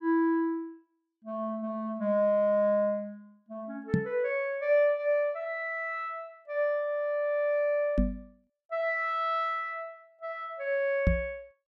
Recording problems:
microphone bump; at 4 s, at 8 s and at 11 s; peak +7 dB vs average level

